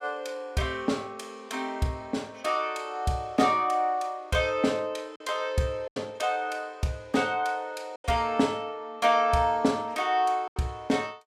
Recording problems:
lost packets; 3% of the sound replaced, filled with silence

